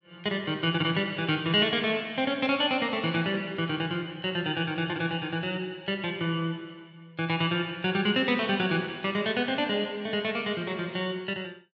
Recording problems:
none

